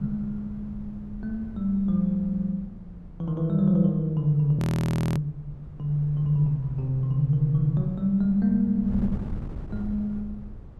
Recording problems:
wind noise; below 150 Hz, SNR 15 dB
frozen audio; at 4.5 s for 0.5 s

